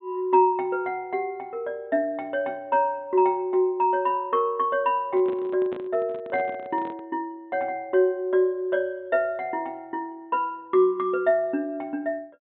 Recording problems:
low-pass filter; nothing above 4 kHz
handling noise; from 5 to 7 s; peak -8 dB vs average level

